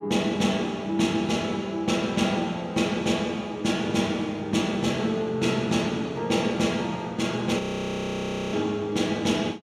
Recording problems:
audio freezing; at 7.5 s for 1 s

